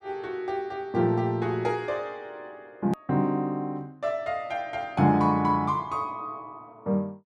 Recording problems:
hard cut with a click; at 3 s

